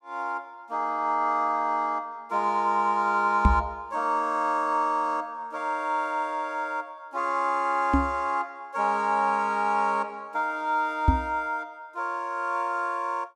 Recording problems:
knock on the microphone; at 3.5 s, at 8 s and at 11 s; peak +9 dB vs average level

